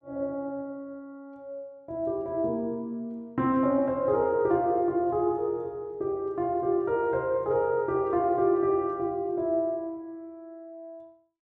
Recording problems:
none

